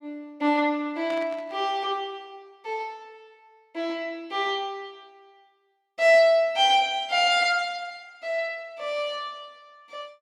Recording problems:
burst of static; at 1 s; peak -12 dB vs average level

